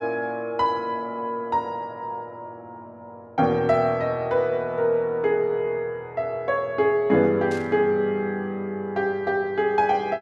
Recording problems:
static burst; at 7.5 s; peak -13 dB vs average level

